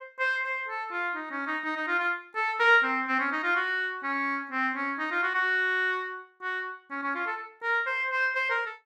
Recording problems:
none

